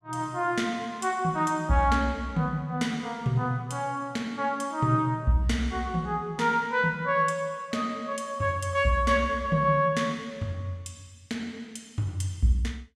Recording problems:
none

